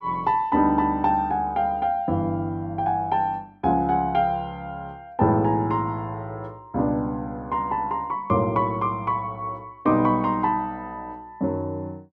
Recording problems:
none

